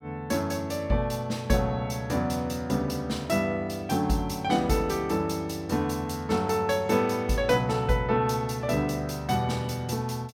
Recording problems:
none

